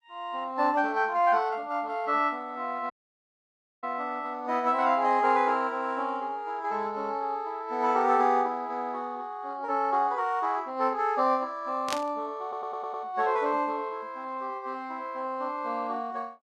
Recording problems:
lossy compression; Opus, log-spectral distance 2 dB, nothing above 10.7 kHz
audio cutting out; at 3 s for 1 s
burst of static; at 12 s; peak 0 dB vs average level
stutter; at 12 s

